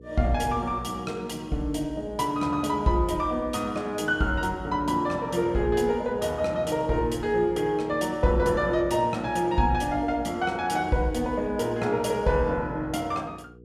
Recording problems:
electrical hum; 60 Hz, harmonics up to 480 Hz, SNR 22 dB

